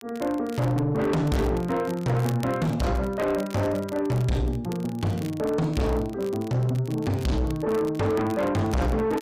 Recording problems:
distorted audio; soft clipping, signal-to-distortion ratio 7 dB
crackle; vinyl, SNR 21 dB

